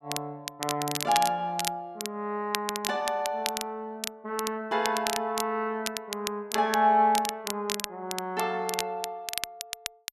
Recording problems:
crackling; vinyl, SNR 6 dB

